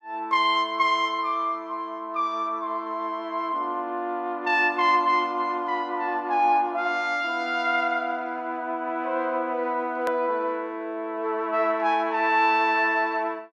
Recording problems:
hard cut with a click; at 10 s

